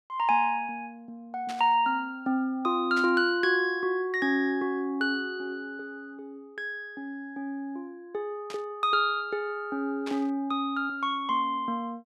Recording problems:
static burst; 4 times, first at 1.5 s; peak -8 dB vs average level

